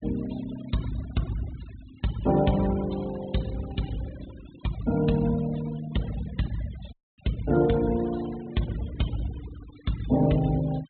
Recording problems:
treble missing; nothing above 4 kHz
denoising artefacts; signal-to-artefact ratio 16 dB
audio cutting out; at 7 s

